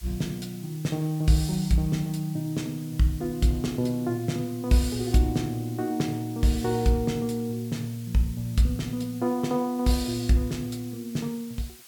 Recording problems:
background hiss; slope +2 dB per octave, SNR 20 dB

